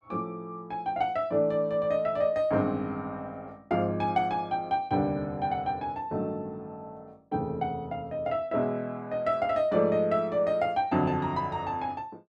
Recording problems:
none

